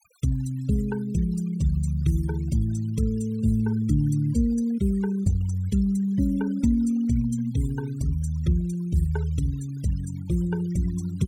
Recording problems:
denoising artefacts; signal-to-artefact ratio 21 dB

